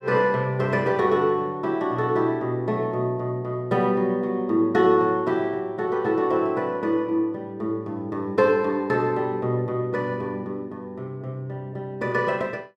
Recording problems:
none

